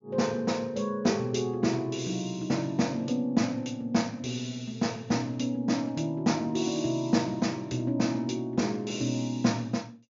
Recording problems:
treble cut off; nothing above 7.2 kHz

